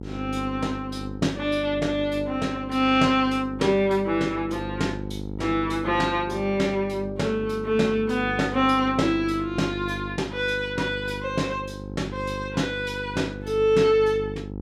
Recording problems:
electrical hum; 50 Hz, harmonics up to 900 Hz, SNR 11 dB

